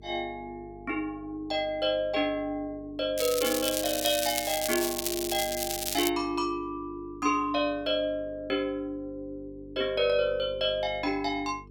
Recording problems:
electrical hum; 50 Hz, harmonics up to 450 Hz, SNR 20 dB
crackling; from 3 to 6 s; loose cable, SNR 2 dB

